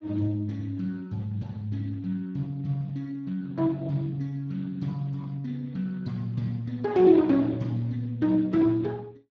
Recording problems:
lossy compression; Speex, log-spectral distance 2 dB

